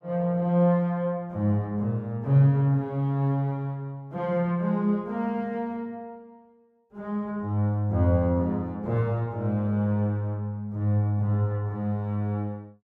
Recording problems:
none

